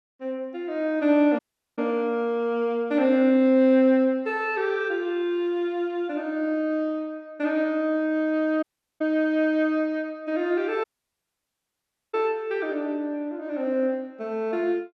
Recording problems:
dropout; at 1.5 s, at 8.5 s and at 11 s for 1.5 s

